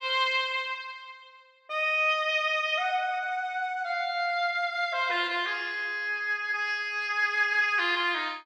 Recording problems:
none

